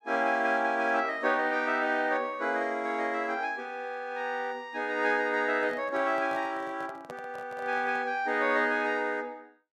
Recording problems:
handling noise; from 5.5 to 8 s; peak -10 dB vs average level

